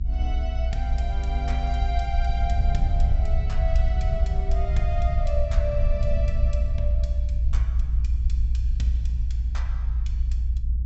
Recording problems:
low-pass filter; nothing above 7.8 kHz
low-frequency rumble; below 62 Hz, SNR -8 dB

